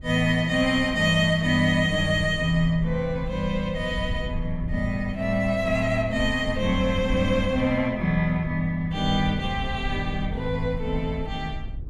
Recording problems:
low-frequency rumble; below 86 Hz, SNR 11 dB

